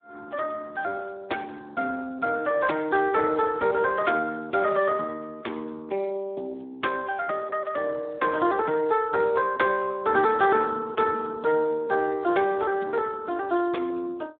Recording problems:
phone line; 240 Hz to 2.8 kHz, Speex

